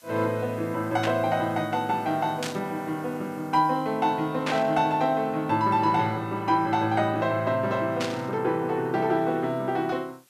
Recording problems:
background hiss; slope +1 dB per octave, SNR 30 dB
static burst; 4 times, first at 1 s; peak -1 dB vs average level

